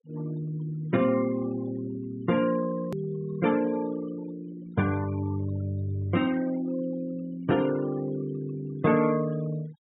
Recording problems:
low-pass filter; nothing above 4 kHz
noise reduction artefacts; signal-to-artefact ratio 18 dB
edit click; at 3 s

